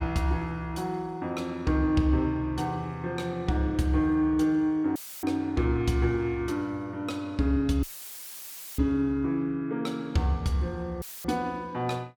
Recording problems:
audio cutting out; at 5 s, at 8 s for 1 s and at 11 s; filled with static

